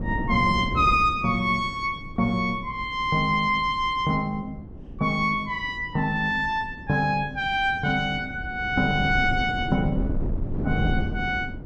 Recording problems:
wind noise; below 220 Hz, SNR 10 dB

